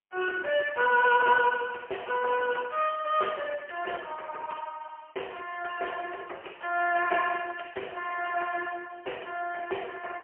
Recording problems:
telephone audio; 340 Hz to 2.9 kHz, AMR-NB, then MP3
crackle; from 1 to 3 s and from 6.5 to 9 s; loose cable, SNR 27 dB

